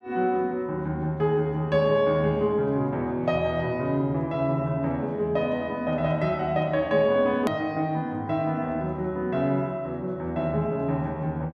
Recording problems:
hard cut with a click; at 7.5 s

